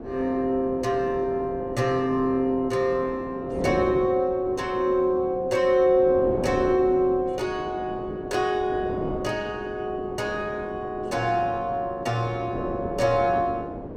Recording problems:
wind on the microphone; below 520 Hz, SNR 11 dB

